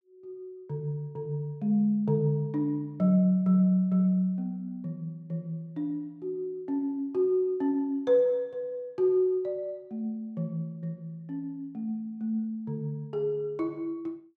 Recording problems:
none

